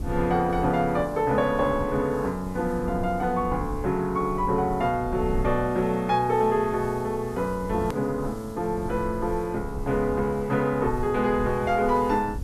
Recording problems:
hiss; slope +1 dB per octave, SNR 27 dB
low-frequency rumble; below 100 Hz, SNR 14 dB
hard cut with a click; at 8 s

